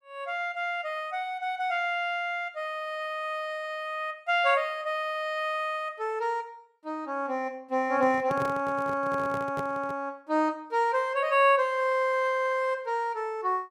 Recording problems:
handling noise; from 8 to 10 s; peak -5 dB vs average level

